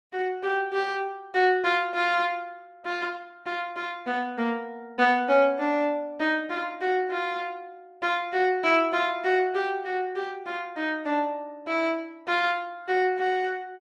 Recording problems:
lossy compression; Opus, log-spectral distance 2 dB

